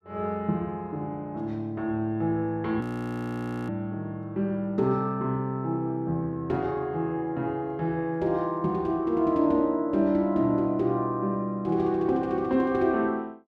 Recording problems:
audio freezing; at 3 s for 1 s

